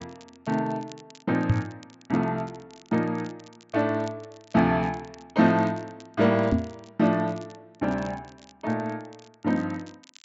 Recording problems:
treble cut off; nothing above 8 kHz
crackle; vinyl, SNR 27 dB
knock on the microphone; at 1.5 s and at 6.5 s; peak +8 dB vs average level

